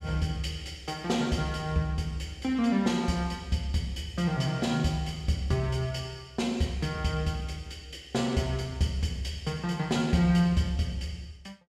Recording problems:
none

